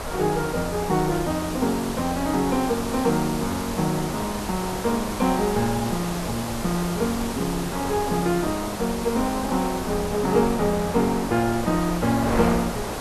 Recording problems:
background hiss; slope -1 dB per octave, SNR 11 dB
wind on the microphone; below 950 Hz, SNR 8 dB

